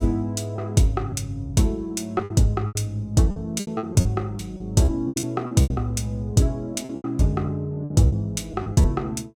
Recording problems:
lost packets; 13% of the sound replaced, filled with repeated pitch periods

